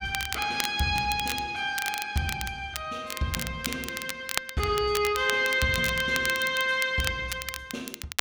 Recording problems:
crackle; vinyl, SNR 8 dB

